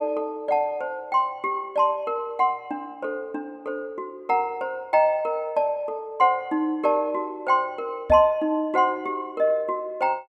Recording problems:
microphone bump; at 8 s; peak -2 dB vs average level

